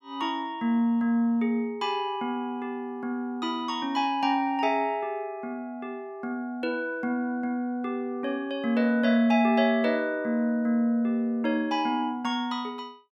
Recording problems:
none

